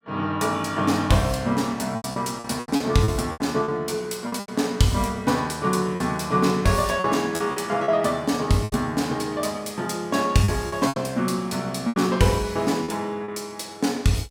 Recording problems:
lost packets; 8% of the sound replaced, filled with repeated pitch periods

